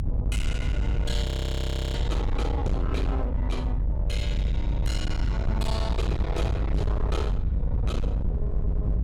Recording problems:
distortion; hard clipping, signal-to-distortion ratio 8 dB
low-frequency rumble; below 90 Hz, SNR -5 dB
frozen audio; at 1 s for 0.5 s

